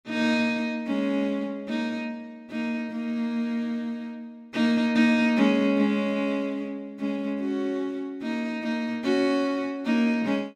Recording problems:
none

